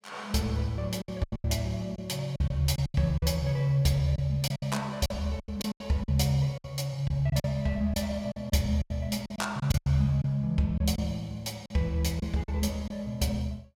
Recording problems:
lost packets; 11% of the sound replaced, filled with silence

